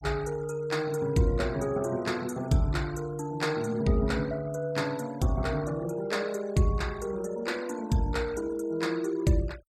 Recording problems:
denoising artefacts; signal-to-artefact ratio 20 dB

